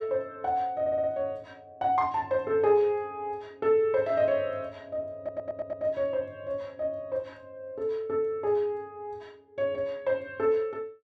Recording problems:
audio stuttering; at 1 s and at 5 s

